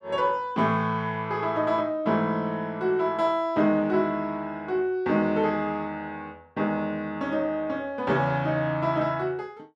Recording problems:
none

